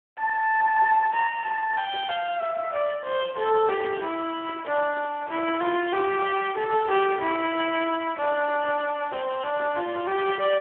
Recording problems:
phone line; 320 Hz to 3.3 kHz, Speex

